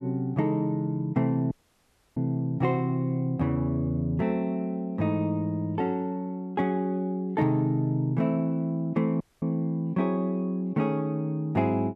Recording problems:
audio cutting out; at 1.5 s for 0.5 s and at 9 s

